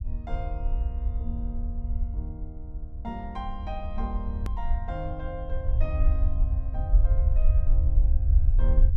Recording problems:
rumble; below 64 Hz, SNR -11 dB
click at an edit; at 4.5 s

